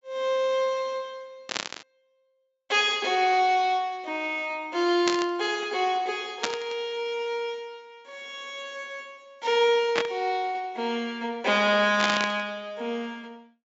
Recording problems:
treble cut off; nothing above 8 kHz
static burst; 5 times, first at 1.5 s; peak +4 dB vs average level

